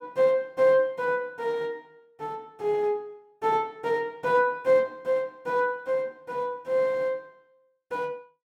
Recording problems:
none

